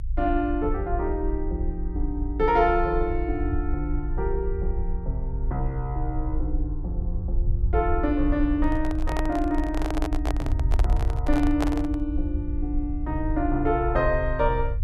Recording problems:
rumble; below 58 Hz, strongest tone 26 Hz, SNR 2 dB
microphone handling noise; from 8.5 to 12 s; peak +2 dB vs average level

